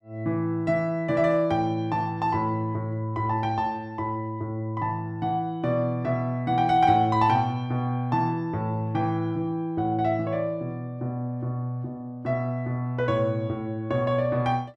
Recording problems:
none

